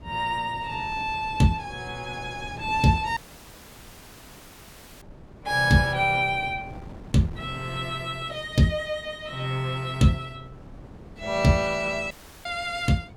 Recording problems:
wind on the microphone; below 380 Hz, SNR 18 dB
audio cutting out; at 3 s for 2 s and at 12 s

